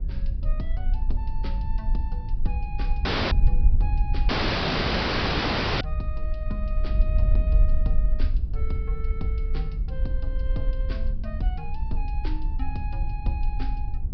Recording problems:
treble missing; nothing above 5.5 kHz
wind on the microphone; below 52 Hz, SNR -9 dB
audio cutting out; at 3 s and at 4.5 s for 1.5 s

